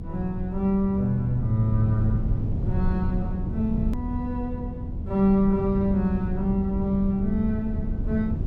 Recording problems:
low-frequency rumble; below 140 Hz, SNR 5 dB
click at an edit; at 4 s

